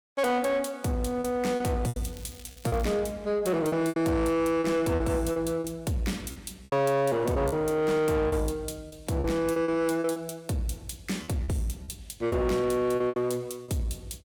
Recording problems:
distortion; soft clipping, signal-to-distortion ratio 10 dB
packet loss; 9% of the sound replaced, filled with repeated pitch periods
crackling; at 2 s; loose cable, SNR 22 dB

